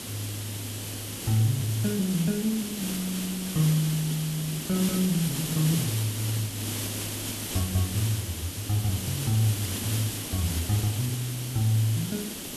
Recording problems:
background hiss; SNR 5 dB

